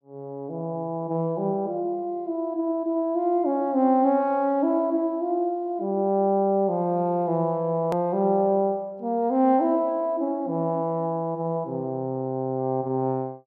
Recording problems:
hard cut with a click; at 8 s

